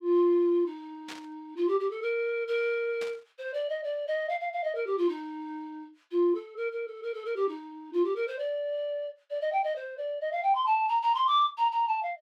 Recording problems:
burst of static; at 1 s and at 3 s; peak -8 dB vs average level

